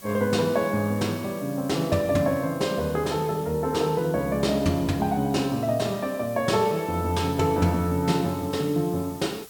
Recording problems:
background hiss; SNR 20 dB

